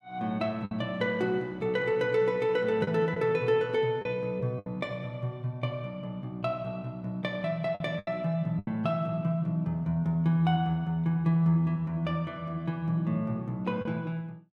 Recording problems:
packet loss; 3% of the sound replaced, filled with the last packet

